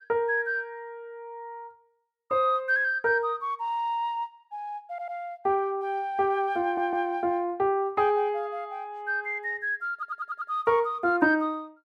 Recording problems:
stutter; at 5 s, at 6.5 s and at 10 s

